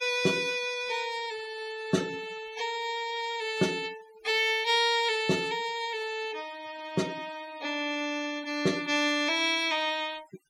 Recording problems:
denoising artefacts; signal-to-artefact ratio 17 dB

